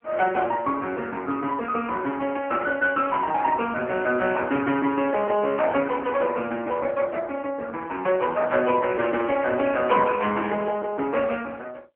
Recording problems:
telephone audio; 240 Hz to 3.3 kHz, AMR-NB

